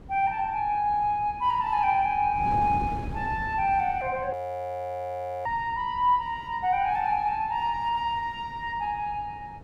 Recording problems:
wind noise; below 290 Hz, SNR 15 dB
audio freezing; at 4.5 s for 1 s

